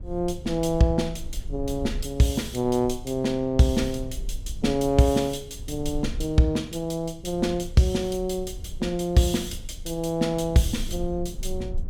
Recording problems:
low-frequency rumble; below 58 Hz, SNR 14 dB

